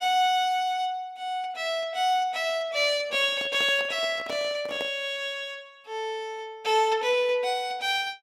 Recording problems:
microphone handling noise; from 3 to 5 s; peak -4 dB vs average level

